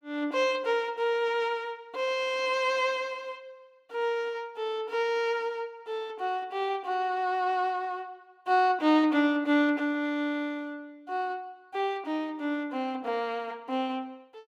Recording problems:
none

